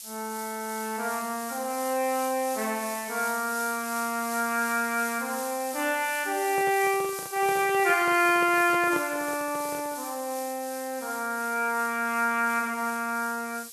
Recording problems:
background hiss; SNR 10 dB
handling noise; from 6.5 to 10 s; peak -6 dB vs average level

